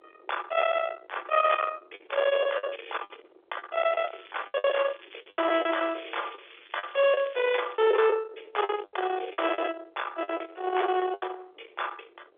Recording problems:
phone line; 320 Hz to 3.6 kHz, G.711
distortion; soft clipping, signal-to-distortion ratio 11 dB
wind on the microphone; below 1.4 kHz, SNR 10 dB
lost packets; 11% of the sound replaced, filled with the last packet
crackle; from 4 to 7.5 s; loose cable, SNR 23 dB

